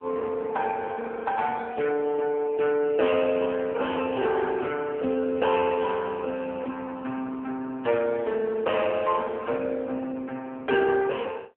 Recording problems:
phone line; 220 Hz to 3.2 kHz, AMR-NB

